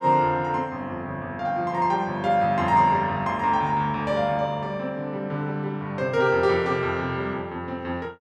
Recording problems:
none

